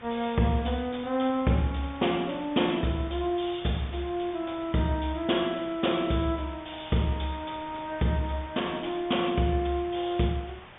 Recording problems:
treble cut off; nothing above 3.6 kHz
background hiss; SNR 18 dB

